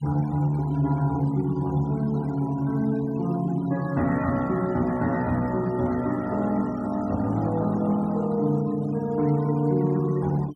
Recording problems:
denoising artefacts; signal-to-artefact ratio 22 dB

